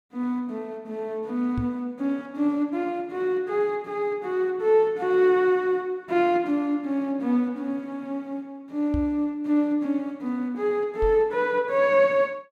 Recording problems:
microphone bump; at 1.5 s, at 9 s and at 11 s; peak -1 dB vs average level

